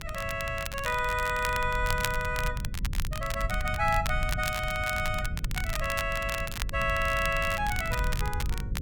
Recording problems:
hum; 50 Hz, harmonics up to 550 Hz, SNR 17 dB
rumble; below 96 Hz, SNR 6 dB
crackling; vinyl, SNR 9 dB

